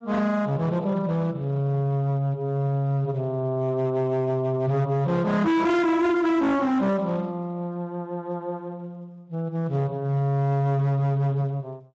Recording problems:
lossy codec; Speex, log-spectral distance 2 dB, nothing above 7.6 kHz
distorted audio; hard clipping, signal-to-distortion ratio 7 dB

